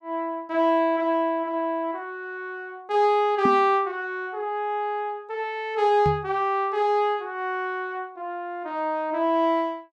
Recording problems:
knock on the microphone; at 3.5 s and at 6 s; peak +3 dB vs average level

